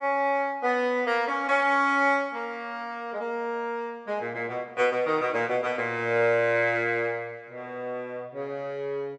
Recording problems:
none

